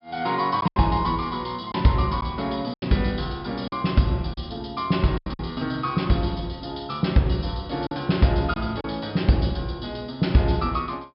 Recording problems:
treble cut off; nothing above 5.3 kHz
lost packets; 4% of the sound replaced, filled with silence

